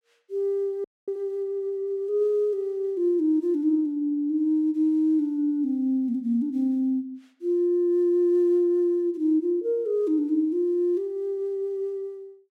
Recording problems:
frozen audio; at 1 s

